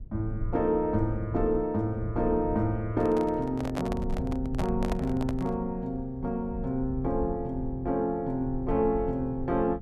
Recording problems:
low-frequency rumble; below 84 Hz, SNR 10 dB
handling noise; from 3 to 5.5 s; peak -1 dB vs average level

